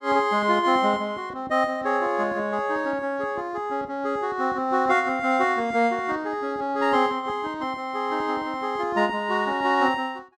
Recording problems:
none

